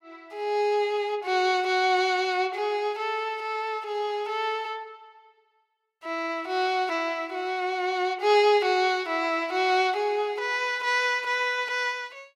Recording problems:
none

